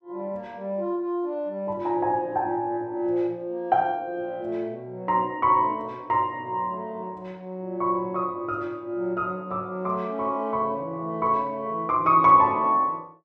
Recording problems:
none

